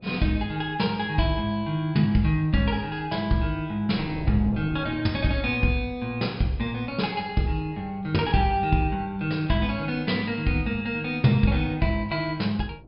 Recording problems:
treble cut off; nothing above 5.2 kHz
wind noise; below 300 Hz, SNR 19 dB

